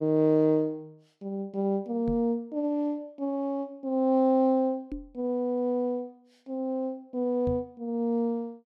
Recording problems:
knock on the microphone; at 2 s, at 5 s and at 7.5 s; peak -4 dB vs average level

